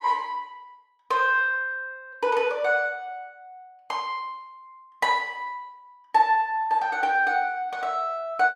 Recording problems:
none

